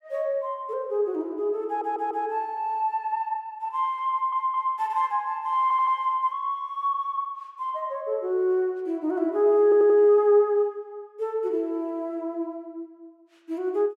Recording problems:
stutter; 4 times, first at 1.5 s

